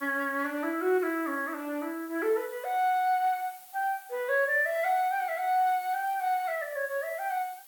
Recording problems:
hiss; slope +2 dB per octave, SNR 20 dB

